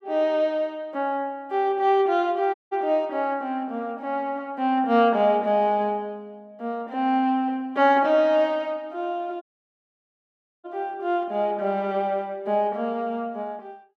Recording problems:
dropout; at 2.5 s and at 9.5 s for 1 s

